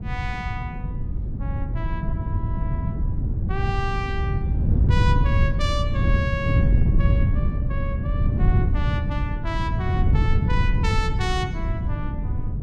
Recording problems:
wind noise; below 120 Hz, SNR -7 dB

